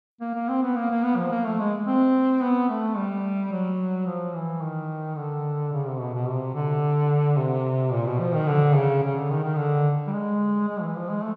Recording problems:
none

